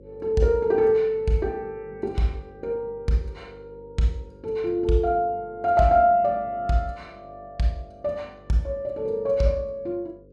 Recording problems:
hum; 50 Hz, harmonics up to 550 Hz, SNR 24 dB

